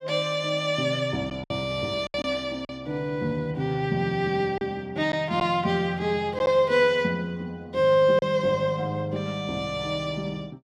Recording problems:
packet loss; 3% of the sound replaced, filled with silence

